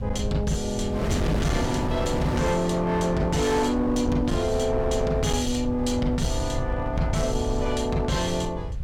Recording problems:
distortion; hard clipping, signal-to-distortion ratio 12 dB
rumble; below 100 Hz, SNR 7 dB
wind on the microphone; below 430 Hz, SNR 6 dB

